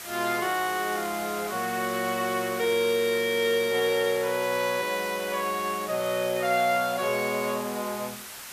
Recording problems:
background hiss; slope +1 dB per octave, SNR 11 dB

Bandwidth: 14.5 kHz